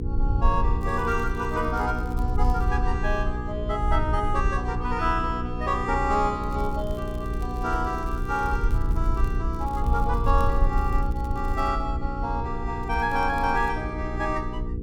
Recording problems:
hum; 60 Hz, harmonics up to 480 Hz, SNR 7 dB
wind noise; below 64 Hz, SNR 2 dB
crackling; 4 times, first at 1 s; loose cable, SNR 26 dB

